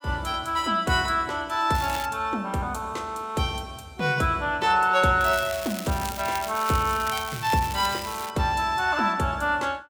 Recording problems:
crackling; at 2 s and from 5 to 8.5 s; loose cable, SNR 12 dB

